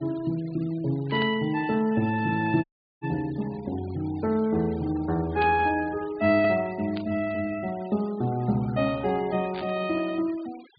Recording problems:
treble cut off; nothing above 4.8 kHz
noise reduction artefacts; signal-to-artefact ratio 22 dB
burst of static; 4 times, first at 1 s; peak -9 dB vs average level
audio cutting out; at 2.5 s

